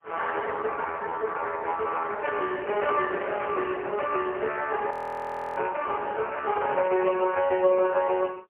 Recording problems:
telephone audio; 340 Hz to 3.3 kHz, AMR-NB, then MP3
frozen audio; at 5 s for 0.5 s

